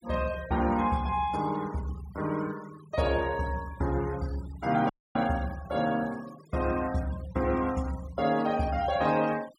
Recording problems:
noise reduction artefacts; signal-to-artefact ratio 19 dB
dropout; at 5 s

